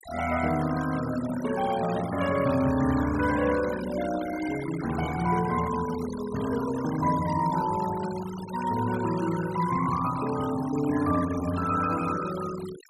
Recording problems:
noise reduction artefacts; signal-to-artefact ratio 13 dB

